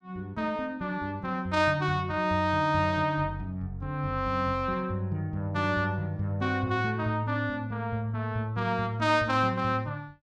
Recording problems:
none

